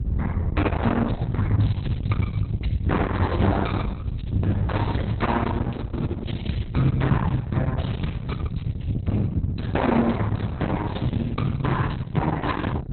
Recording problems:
lossy codec; Opus, log-spectral distance 3 dB, nothing above 4.1 kHz
distortion; soft clipping, signal-to-distortion ratio 7 dB
low-frequency rumble; below 170 Hz, SNR 2 dB

